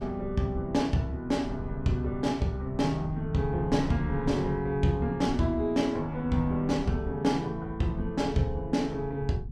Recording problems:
rumble; below 110 Hz, SNR 13 dB

